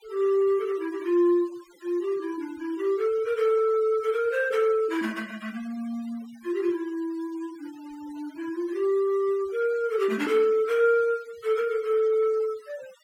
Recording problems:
noise reduction artefacts; signal-to-artefact ratio 24 dB

